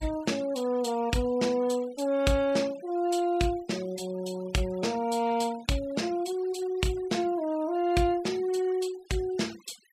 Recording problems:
noise reduction artefacts; signal-to-artefact ratio 20 dB

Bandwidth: 15 kHz